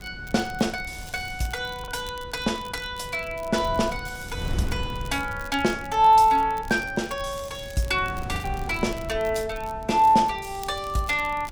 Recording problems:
wind on the microphone; below 160 Hz, SNR 14 dB
crackle; vinyl, SNR 22 dB
lost packets; 1% of the sound replaced, filled with the last packet

